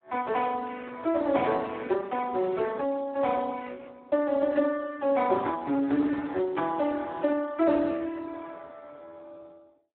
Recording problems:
telephone audio; 240 Hz to 2.7 kHz, Speex

